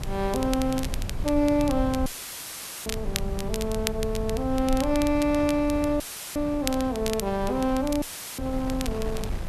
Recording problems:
hiss; slope 0 dB per octave, SNR 27 dB
rumble; below 88 Hz, SNR 10 dB
wind noise; below 640 Hz, SNR 14 dB
crackle; vinyl, SNR 11 dB
audio cutting out; at 2 s for 1 s, at 6 s and at 8 s; filled with static

